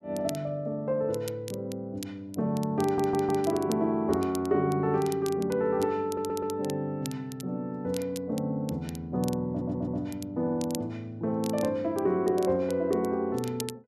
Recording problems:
crackle; vinyl, SNR 17 dB
audio stuttering; at 3 s, at 6 s and at 9.5 s

